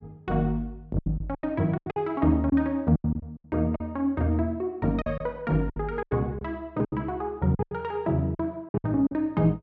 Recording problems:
lost packets; 12% of the sound replaced, filled with silence

